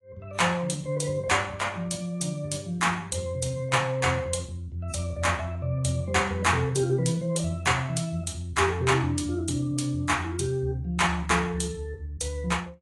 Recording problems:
lossy compression; AAC, log-spectral distance 3 dB, nothing above 10.1 kHz

